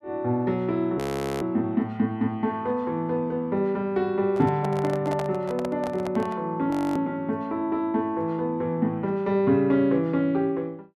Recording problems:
audio freezing; at 1 s and at 6.5 s
handling noise; from 4.5 to 6.5 s; peak -3 dB vs average level

